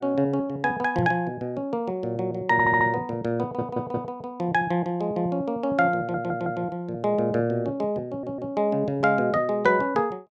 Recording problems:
microphone thump; at 1 s; peak +1 dB vs average level
audio stuttering; 4 times, first at 2.5 s

